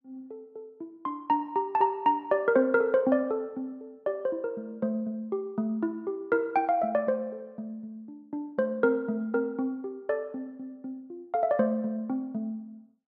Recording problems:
none

